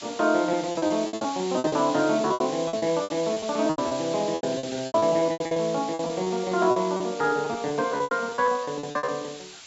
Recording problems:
low-pass filter; nothing above 8 kHz
hiss; slope +2 dB per octave, SNR 14 dB
lost packets; 19% of the sound replaced, filled with repeated pitch periods

